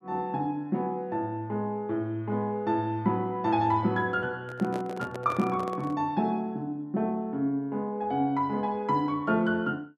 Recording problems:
microphone handling noise; from 4.5 to 6 s; peak -5 dB vs average level

